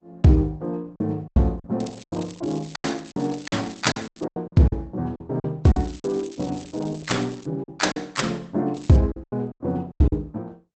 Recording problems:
codec artefacts; Opus, log-spectral distance 5 dB, nothing above 8 kHz
lost packets; 12% of the sound replaced, filled with silence
crackling; from 2 to 4 s, from 5.5 to 7.5 s and at 8.5 s; loose cable, SNR 22 dB

